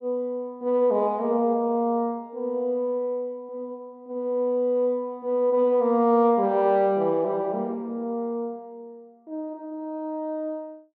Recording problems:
none

